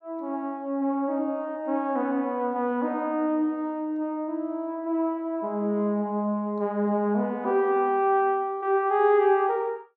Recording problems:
none

